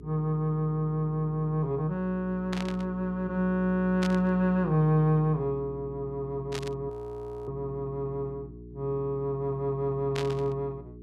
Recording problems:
electrical hum; 60 Hz, harmonics up to 420 Hz, SNR 15 dB
static burst; 4 times, first at 2.5 s; peak -3 dB vs average level
frozen audio; at 7 s for 0.5 s

